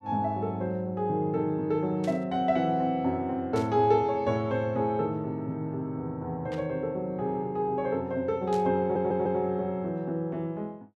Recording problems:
static burst; 4 times, first at 2 s; peak -11 dB vs average level
audio stuttering; at 9 s

